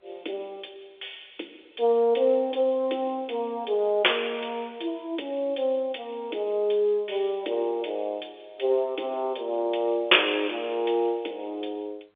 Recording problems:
telephone audio; 300 Hz to 3.6 kHz, G.711

